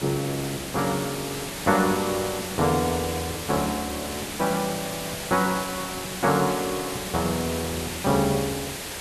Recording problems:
background hiss; slope -2 dB per octave, SNR 6 dB

